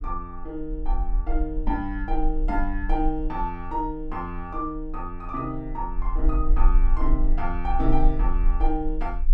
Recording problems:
rumble; below 38 Hz, strongest tone 26 Hz, SNR -2 dB

